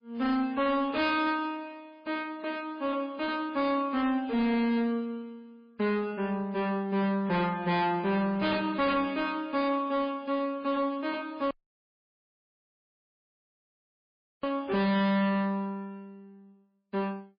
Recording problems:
lossy compression; MP3, log-spectral distance 2 dB
distorted audio; hard clipping, uneven, signal-to-distortion ratio 9 dB
audio cutting out; at 12 s for 3 s

